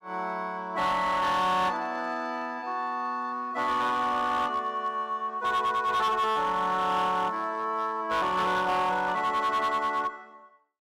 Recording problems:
distorted audio; hard clipping, uneven, signal-to-distortion ratio 11 dB

